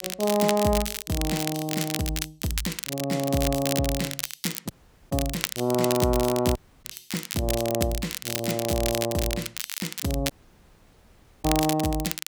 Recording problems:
crackling; vinyl, SNR 4 dB
dropout; at 4.5 s, at 6.5 s and at 10 s for 1 s

